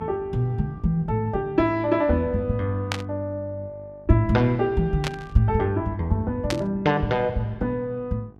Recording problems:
electrical hum; 50 Hz, harmonics up to 1.2 kHz, SNR 24 dB
burst of static; at 3 s, at 5 s and at 6.5 s; peak +1 dB vs average level

